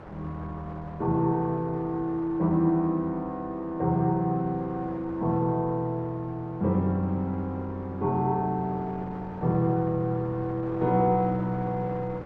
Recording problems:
wind on the microphone; below 900 Hz, SNR 18 dB

